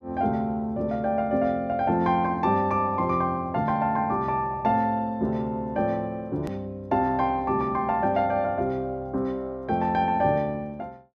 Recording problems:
hard cut with a click; at 6.5 s

